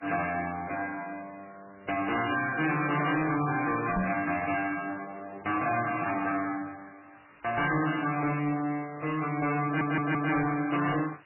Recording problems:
lossy compression; MP2, then MP3, log-spectral distance 8 dB, nothing above 2.7 kHz
distortion; hard clipping, signal-to-distortion ratio 10 dB
hiss; SNR 27 dB
microphone bump; at 4 s; peak +3 dB vs average level
audio stuttering; at 9.5 s

